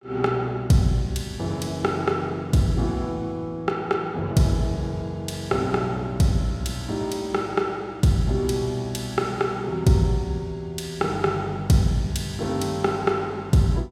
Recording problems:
none

